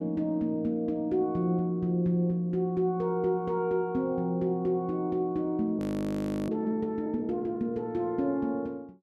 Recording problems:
audio freezing; at 6 s for 0.5 s

